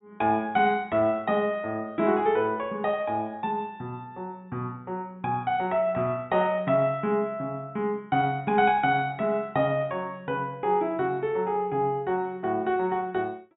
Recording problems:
treble cut off; nothing above 4 kHz

